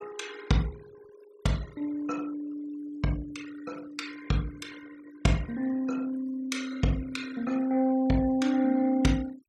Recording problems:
noise reduction artefacts; signal-to-artefact ratio 20 dB

